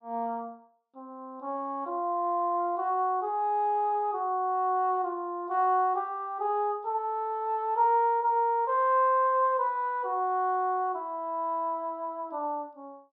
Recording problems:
treble cut off; nothing above 5.5 kHz

